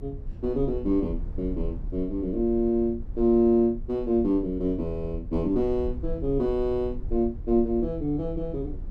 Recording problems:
rumble; below 64 Hz, SNR 12 dB

